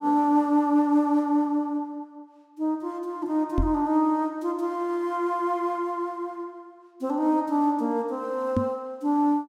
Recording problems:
knock on the microphone; at 3.5 s and at 8.5 s; peak +4 dB vs average level

